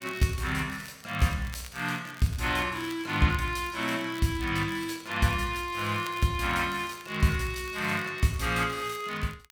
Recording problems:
crackle; vinyl, SNR 20 dB

